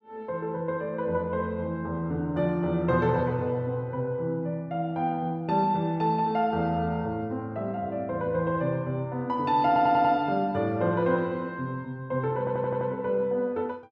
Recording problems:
stutter; at 9.5 s and at 12 s

